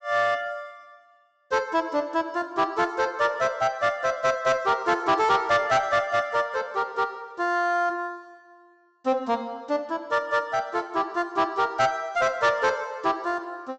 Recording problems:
low-pass filter; nothing above 8 kHz
distortion; soft clipping, signal-to-distortion ratio 11 dB

